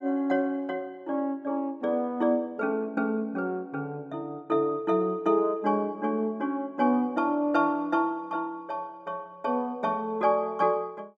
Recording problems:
none

